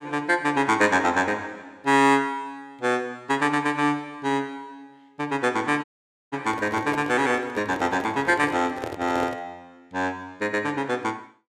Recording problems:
audio cutting out; at 6 s
microphone handling noise; from 6.5 to 9.5 s; peak -4 dB vs average level

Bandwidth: 15.5 kHz